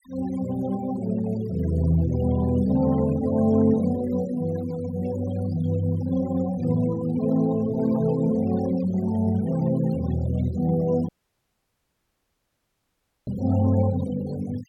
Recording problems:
denoising artefacts; signal-to-artefact ratio 19 dB
dropout; at 11 s for 2 s

